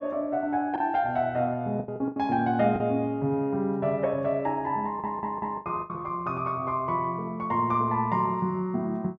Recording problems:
packet loss; 5% of the sound replaced, filled with the last packet
audio stuttering; at 5 s

